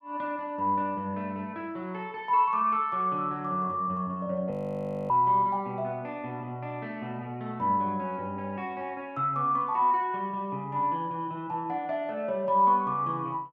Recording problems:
audio freezing; at 4.5 s for 0.5 s

